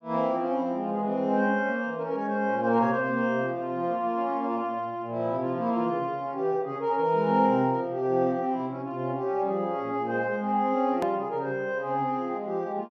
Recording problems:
click at an edit; at 11 s

